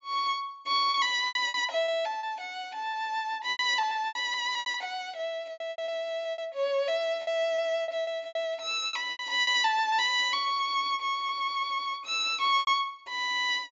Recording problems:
treble missing; nothing above 8 kHz
lost packets; 11% of the sound replaced, filled with repeated pitch periods

